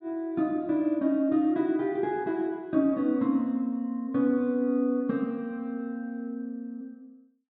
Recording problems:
none

